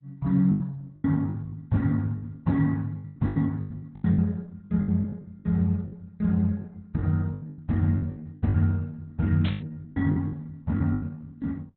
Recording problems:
lossy codec; Opus, log-spectral distance 2 dB, nothing above 4 kHz
packet loss; 14% of the sound replaced, filled with the last packet
static burst; at 9.5 s; peak -6 dB vs average level

